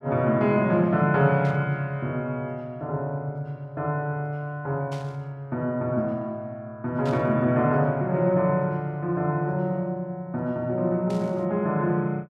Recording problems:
static burst; 4 times, first at 1.5 s; peak -13 dB vs average level

